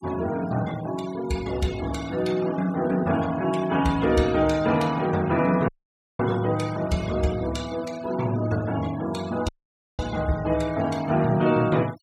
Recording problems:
noise reduction artefacts; signal-to-artefact ratio 18 dB
dropout; at 5.5 s for 0.5 s and at 9.5 s for 0.5 s

